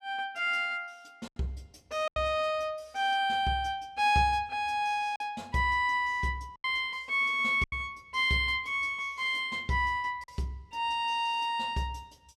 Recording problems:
lost packets; 3% of the sound replaced, filled with silence

